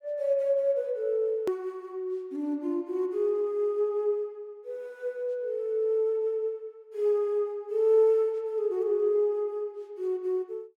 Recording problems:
hard cut with a click; at 1.5 s

